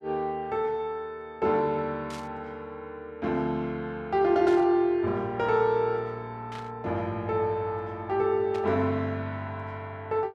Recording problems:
static burst; 4 times, first at 2 s; peak -11 dB vs average level

